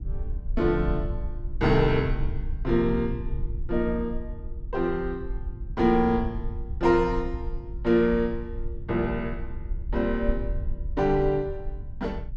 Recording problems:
rumble; below 60 Hz, SNR 9 dB

